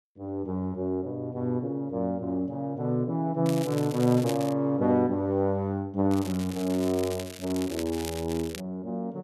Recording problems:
crackling; from 3.5 to 4.5 s and from 6 to 8.5 s; loose cable, SNR 14 dB

